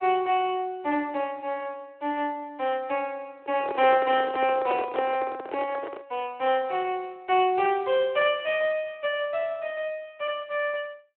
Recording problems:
telephone audio; 260 Hz to 3.2 kHz, Speex
handling noise; from 3.5 to 6 s; peak 0 dB vs average level

